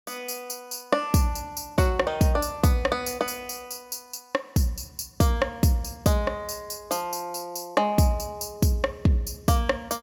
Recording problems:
none

